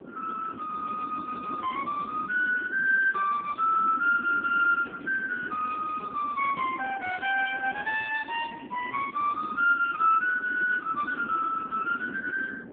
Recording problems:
telephone audio; 470 Hz to 2.9 kHz, AMR-NB
wind noise; below 410 Hz, SNR 16 dB

